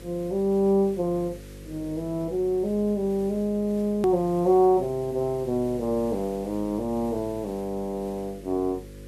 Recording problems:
hum; 50 Hz, harmonics up to 550 Hz, SNR 19 dB
background hiss; slope 0 dB per octave, SNR 26 dB
edit click; at 4 s

